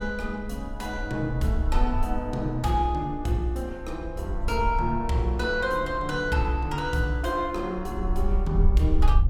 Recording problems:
wind noise; below 58 Hz, SNR 4 dB

